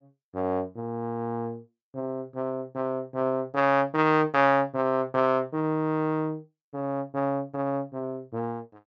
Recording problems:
treble missing; nothing above 8 kHz

